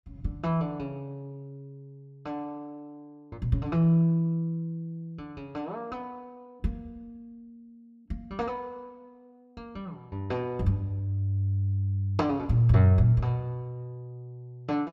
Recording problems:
none

